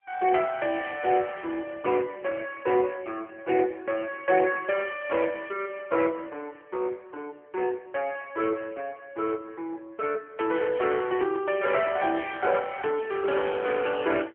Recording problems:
telephone audio; 300 Hz to 3.3 kHz, AMR-NB

